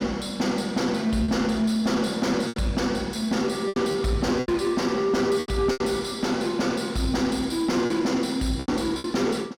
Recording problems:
distorted audio; soft clipping, signal-to-distortion ratio 10 dB
packet loss; 7% of the sound replaced, filled with repeated pitch periods

